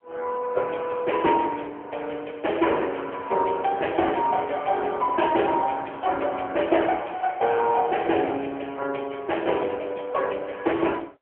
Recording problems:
phone line; 300 Hz to 3.2 kHz, AMR-NB

